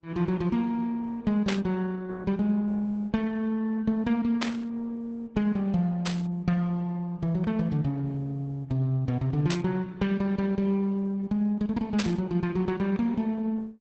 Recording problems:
lossy codec; Opus, log-spectral distance 2 dB
static burst; 5 times, first at 1.5 s; peak +2 dB vs average level

